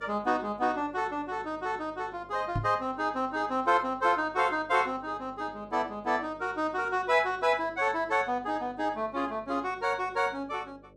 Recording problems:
hum; 50 Hz, harmonics up to 600 Hz, SNR 25 dB
microphone thump; at 2.5 s; peak +1 dB vs average level

